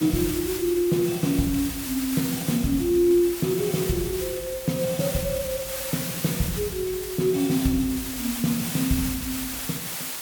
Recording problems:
background hiss; slope 0 dB per octave, SNR 6 dB

